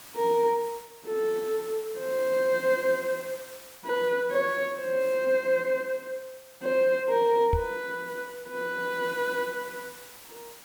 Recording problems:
background hiss; slope -1 dB per octave, SNR 19 dB
microphone bump; at 7.5 s; peak +3 dB vs average level

